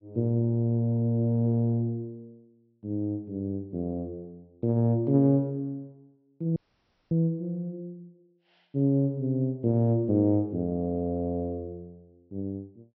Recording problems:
treble missing; nothing above 5.8 kHz
audio cutting out; at 6.5 s for 0.5 s

